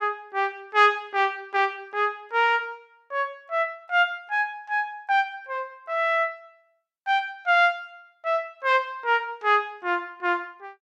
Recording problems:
none

